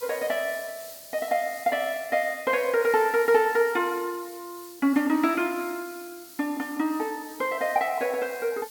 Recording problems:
background hiss; SNR 17 dB

